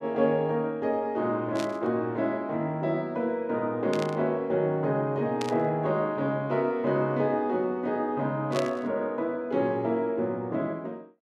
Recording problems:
static burst; 4 times, first at 1.5 s; peak -4 dB vs average level

